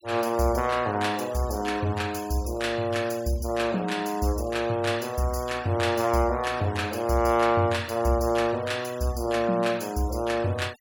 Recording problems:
denoising artefacts; signal-to-artefact ratio 21 dB

